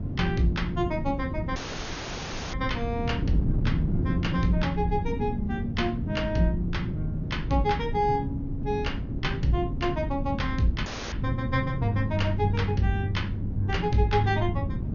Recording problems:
lossy compression; MP2, log-spectral distance 2 dB, nothing above 6.7 kHz
wind on the microphone; below 180 Hz, SNR 3 dB
audio cutting out; at 1.5 s for 1 s and at 11 s

